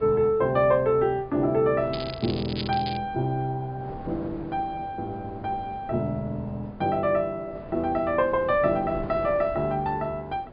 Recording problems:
low-pass filter; nothing above 5 kHz
wind on the microphone; below 590 Hz, SNR 17 dB
crackle; from 2 to 3 s; loose cable, SNR 12 dB

